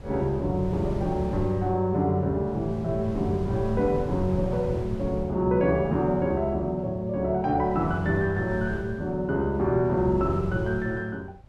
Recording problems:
wind noise; below 140 Hz, SNR 12 dB

